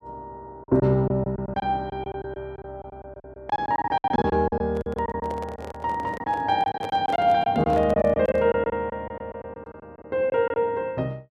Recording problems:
lost packets; 14% of the sound replaced, filled with silence
microphone handling noise; from 4.5 to 8.5 s; peak -6 dB vs average level

